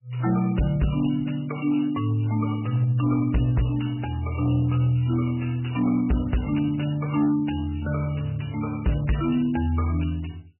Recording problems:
lossy compression; MP3, log-spectral distance 6 dB, nothing above 2.9 kHz
distortion; hard clipping, signal-to-distortion ratio 12 dB

